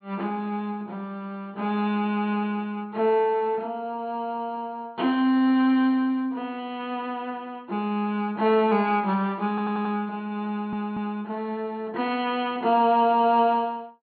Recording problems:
low-pass filter; nothing above 4.5 kHz
stutter; at 9.5 s and at 10 s

